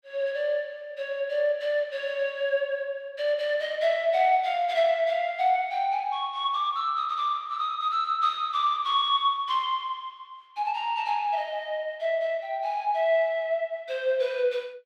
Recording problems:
none

